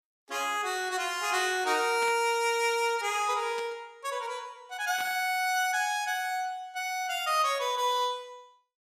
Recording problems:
static burst; at 2 s, at 3.5 s and at 5 s; peak -9 dB vs average level

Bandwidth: 15 kHz